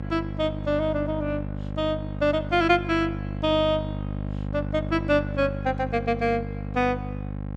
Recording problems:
hum; 50 Hz, harmonics up to 1.1 kHz, SNR 7 dB

